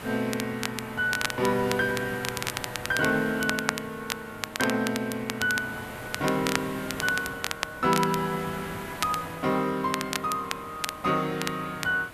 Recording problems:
hiss; SNR 13 dB
crackle; vinyl, SNR 6 dB

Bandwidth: 14 kHz